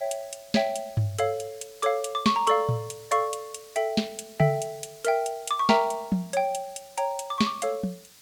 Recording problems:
hiss; slope +1 dB per octave, SNR 23 dB

